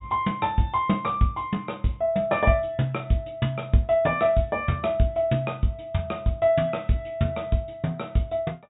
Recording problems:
treble cut off; nothing above 4 kHz

